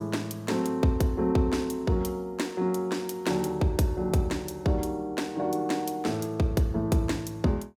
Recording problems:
none

